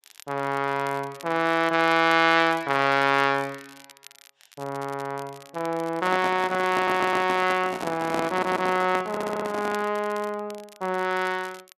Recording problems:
crackle; vinyl, SNR 23 dB
microphone handling noise; from 6 to 10 s; peak -1 dB vs average level
stutter; at 7 s, at 8.5 s and at 9 s

